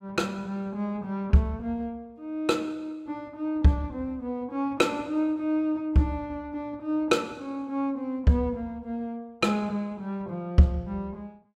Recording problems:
none

